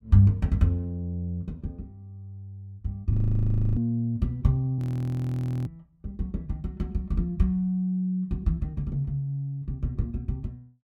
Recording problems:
audio freezing; at 3 s for 0.5 s and at 5 s for 1 s

